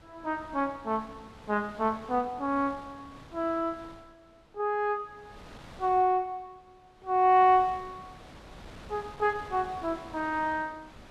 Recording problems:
wind on the microphone; below 1.6 kHz, SNR 21 dB

